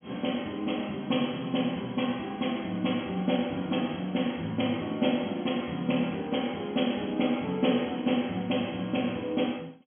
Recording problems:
treble cut off; nothing above 3.3 kHz

